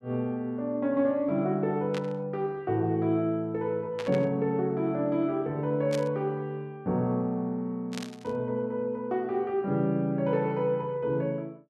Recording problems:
static burst; 4 times, first at 2 s; peak -5 dB vs average level

